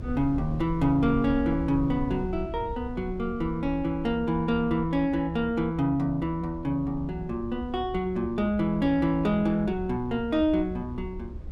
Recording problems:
low-frequency rumble; below 90 Hz, SNR 12 dB

